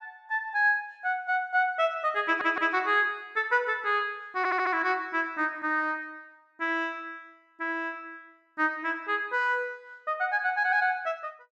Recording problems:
stutter; at 2.5 s and at 4.5 s

